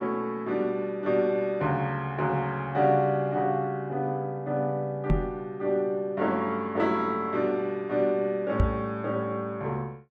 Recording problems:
microphone thump; at 5 s and at 8.5 s; peak +7 dB vs average level

